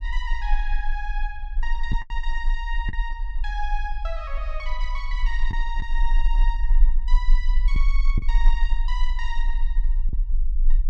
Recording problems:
rumble; below 36 Hz, strongest tone 24 Hz, SNR -8 dB
packet loss; 2% of the sound replaced, filled with the last packet

